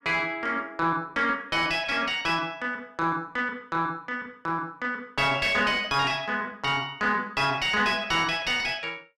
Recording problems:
distortion; soft clipping, signal-to-distortion ratio 11 dB

